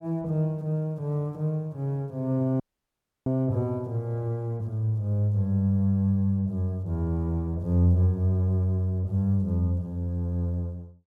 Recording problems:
dropout; at 2.5 s for 0.5 s

